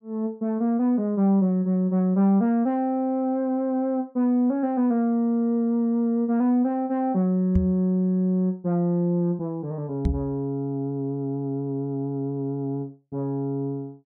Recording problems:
knock on the microphone; at 7.5 s and at 10 s; peak +4 dB vs average level

